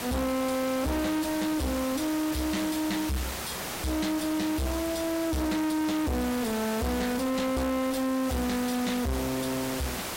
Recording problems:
distorted audio; soft clipping, signal-to-distortion ratio 4 dB
hiss; slope -4 dB per octave, SNR 6 dB

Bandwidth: 16 kHz